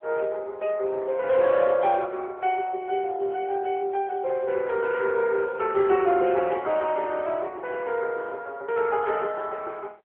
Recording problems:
telephone audio; 320 Hz to 3.4 kHz, AMR-NB

